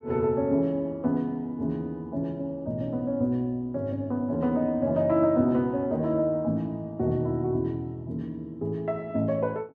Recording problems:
none

